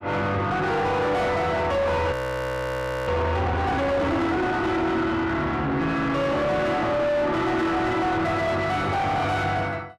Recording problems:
distorted audio; soft clipping, signal-to-distortion ratio 5 dB
frozen audio; at 2 s for 1 s

